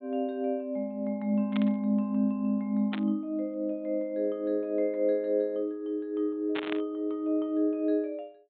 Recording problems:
low-pass filter; nothing above 4 kHz
burst of static; at 1.5 s, at 3 s and at 6.5 s; peak -2 dB vs average level

